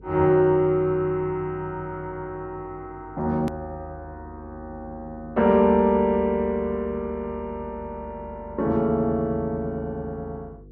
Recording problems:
low-pass filter; nothing above 8 kHz
hum; 50 Hz, harmonics up to 500 Hz, SNR 22 dB
click at an edit; at 3.5 s

